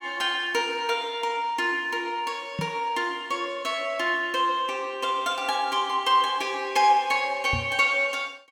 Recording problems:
knock on the microphone; at 2.5 s and at 7.5 s; peak -2 dB vs average level

